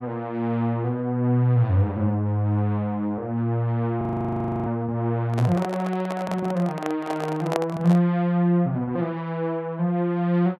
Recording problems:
audio freezing; at 4 s for 0.5 s
handling noise; from 5.5 to 8 s; peak +2 dB vs average level

